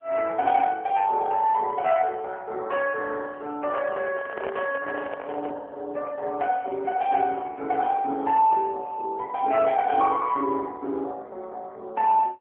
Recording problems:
phone line; 320 Hz to 3.2 kHz, AMR-NB
handling noise; from 3.5 to 5.5 s; peak -4 dB vs average level

